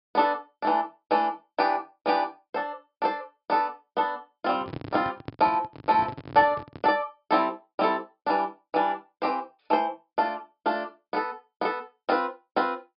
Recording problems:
low-pass filter; nothing above 5.5 kHz
handling noise; from 4.5 to 7 s; peak -5 dB vs average level

